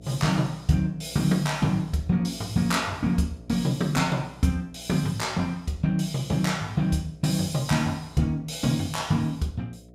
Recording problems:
hum; 60 Hz, harmonics up to 720 Hz, SNR 22 dB

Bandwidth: 15.5 kHz